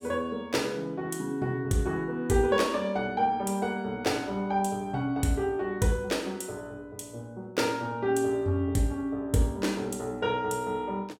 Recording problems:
none

